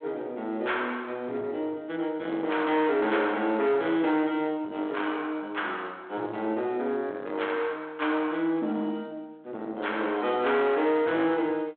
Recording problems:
telephone audio; 220 Hz to 3.5 kHz, G.726
distortion; soft clipping, signal-to-distortion ratio 12 dB

